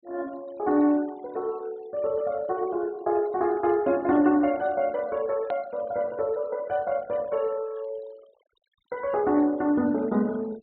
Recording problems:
treble cut off; nothing above 4.2 kHz
noise reduction artefacts; signal-to-artefact ratio 25 dB
click at an edit; at 5.5 s

